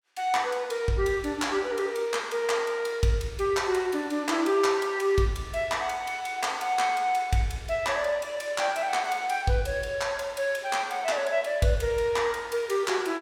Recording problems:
none

